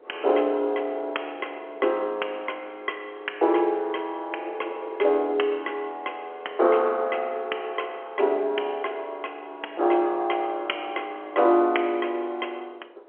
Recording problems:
phone line; 300 Hz to 3.3 kHz, G.711
wind on the microphone; below 660 Hz, SNR 22 dB

